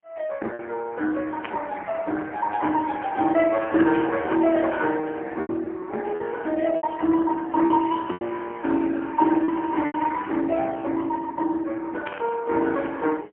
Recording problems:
telephone audio; 220 Hz to 3.3 kHz, AMR-NB, then MP3
lost packets; 4% of the sound replaced, filled with repeated pitch periods
static burst; at 1.5 s, at 4 s and at 12 s; peak -4 dB vs average level

